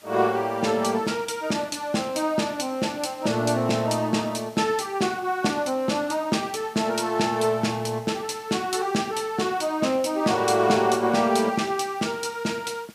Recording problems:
hiss; slope 0 dB per octave, SNR 26 dB

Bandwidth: 15 kHz